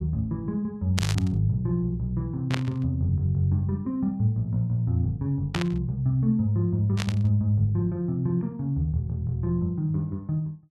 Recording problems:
static burst; 4 times, first at 1 s; peak +1 dB vs average level

